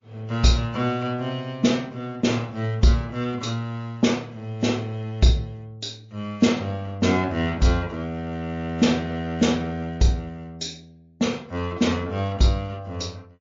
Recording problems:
lossy codec; MP3, log-spectral distance 2 dB, nothing above 6.2 kHz

